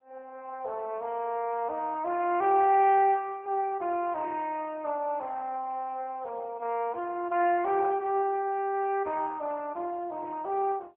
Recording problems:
telephone audio; 320 Hz to 3.1 kHz, AMR-NB

